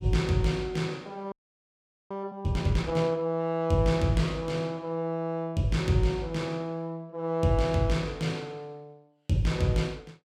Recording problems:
frozen audio; at 1.5 s for 1 s

